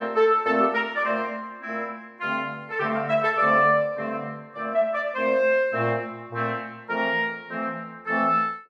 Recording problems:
none

